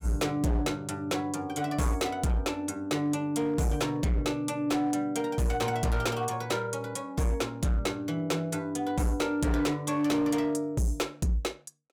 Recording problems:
distorted audio; hard clipping, signal-to-distortion ratio 10 dB

